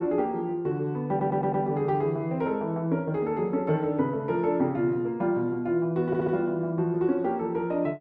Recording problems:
audio stuttering; at 1 s and at 6 s

